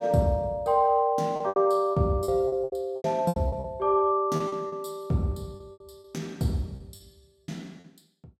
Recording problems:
packet loss; 13% of the sound replaced, filled with repeated pitch periods

